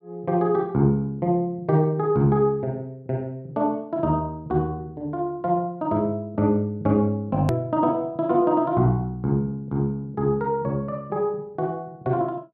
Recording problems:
edit click; at 7.5 s

